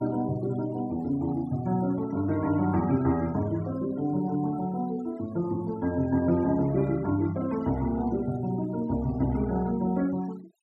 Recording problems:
denoising artefacts; signal-to-artefact ratio 21 dB

